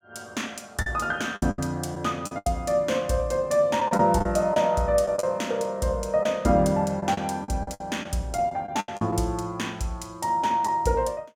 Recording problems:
lost packets; 8% of the sound replaced, filled with the last packet

